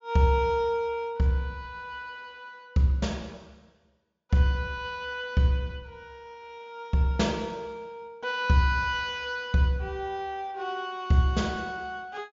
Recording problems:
treble cut off; nothing above 7.3 kHz

